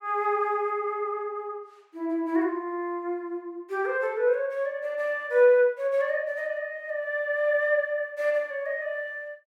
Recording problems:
none

